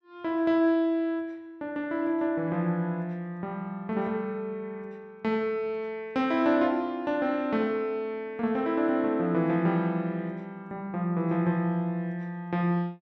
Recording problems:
none

